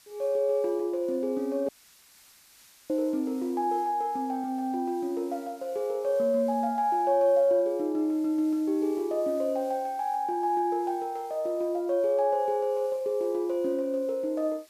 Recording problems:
hiss; slope +2 dB per octave, SNR 27 dB
dropout; at 1.5 s for 1 s

